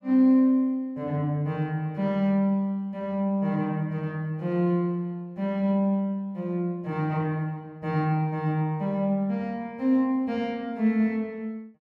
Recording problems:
none

